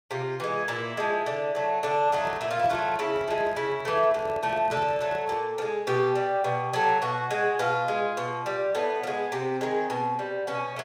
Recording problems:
handling noise; from 2 to 5.5 s; peak -9 dB vs average level

